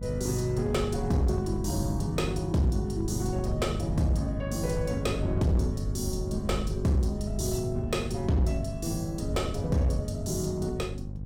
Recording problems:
distorted audio; hard clipping, uneven, signal-to-distortion ratio 11 dB
hum; 50 Hz, harmonics up to 550 Hz, SNR 6 dB
wind noise; below 100 Hz, SNR 9 dB

